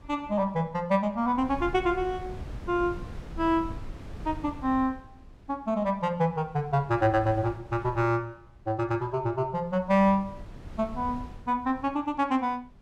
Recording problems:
wind noise; below 170 Hz, SNR 16 dB

